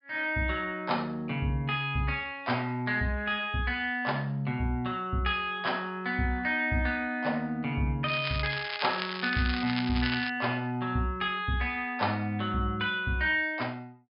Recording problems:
treble missing; nothing above 5.5 kHz
crackle; from 8 to 10 s; loose cable, SNR 6 dB

